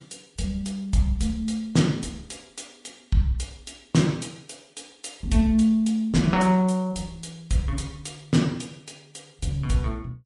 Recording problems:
lossy codec; MP3, log-spectral distance 3 dB

